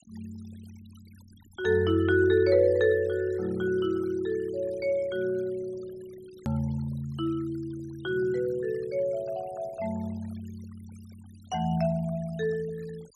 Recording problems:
noise reduction artefacts; signal-to-artefact ratio 25 dB
click at an edit; at 6.5 s

